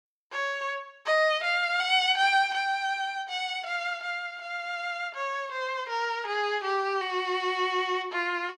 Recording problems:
none

